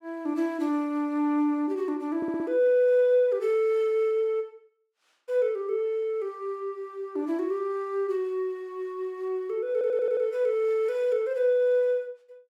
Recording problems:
stutter; at 2 s and at 9.5 s

